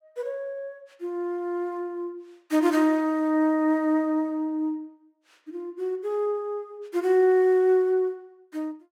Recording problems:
none

